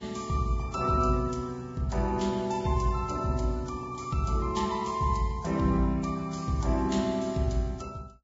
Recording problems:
treble missing; nothing above 7.3 kHz
codec artefacts; Vorbis, log-spectral distance 3 dB

